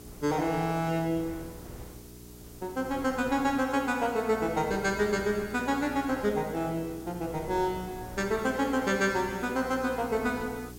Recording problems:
mains hum; 60 Hz, harmonics up to 420 Hz, SNR 18 dB
background hiss; slope +3 dB per octave, SNR 22 dB
wind on the microphone; below 550 Hz, SNR 21 dB

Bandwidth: 16 kHz